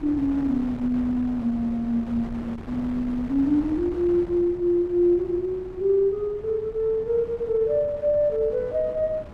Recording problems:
wind on the microphone; below 460 Hz, SNR 15 dB

